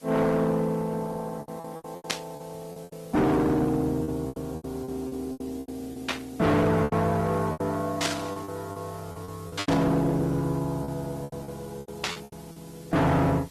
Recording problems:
codec artefacts; Opus, log-spectral distance 5 dB, nothing above 13.1 kHz
distorted audio; hard clipping, uneven, signal-to-distortion ratio 6 dB
background hiss; slope +1 dB per octave, SNR 23 dB
packet loss; 13% of the sound replaced, filled with repeated pitch periods
burst of static; 5 times, first at 2 s; peak +4 dB vs average level

